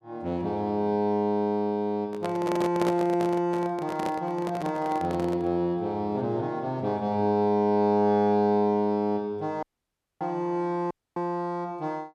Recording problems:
microphone handling noise; from 2 to 5.5 s; peak +1 dB vs average level
audio cutting out; at 9.5 s for 0.5 s and at 11 s

